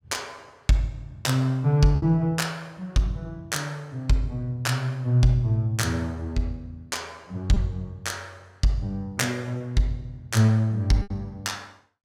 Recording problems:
lost packets; 1.8% of the sound replaced, filled with repeated pitch periods

